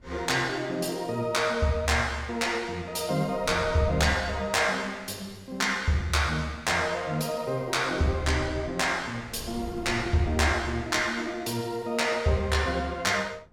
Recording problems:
wind on the microphone; below 190 Hz, SNR 18 dB

